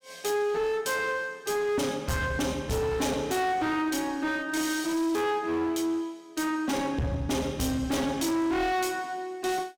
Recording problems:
distorted audio; hard clipping, uneven, signal-to-distortion ratio 7 dB

